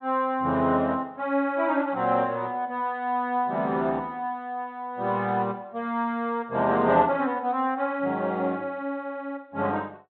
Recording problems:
treble missing; nothing above 4 kHz

